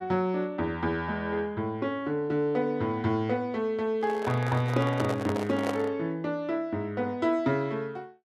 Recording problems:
microphone handling noise; from 4 to 6 s; peak +1 dB vs average level

